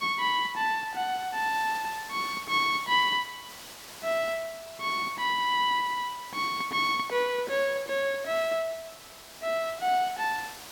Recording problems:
background hiss; slope -1 dB per octave, SNR 16 dB

